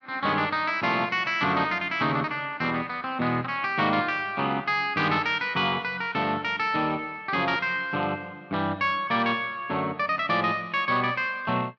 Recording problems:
none

